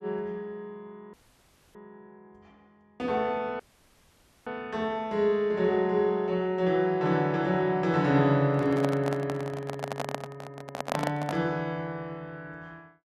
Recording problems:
dropout; at 1 s for 0.5 s and at 3.5 s for 1 s
microphone handling noise; from 8.5 to 11 s; peak +2 dB vs average level

